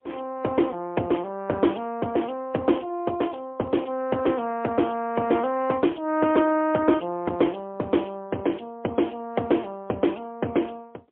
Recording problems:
telephone audio; 170 Hz to 3.2 kHz, AMR-NB, then MP3

